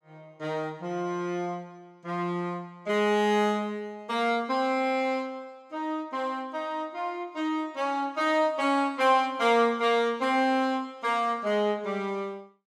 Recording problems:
none

